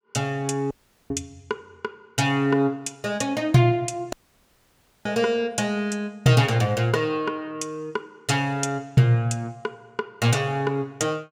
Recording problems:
audio cutting out; at 0.5 s and at 4 s for 1 s

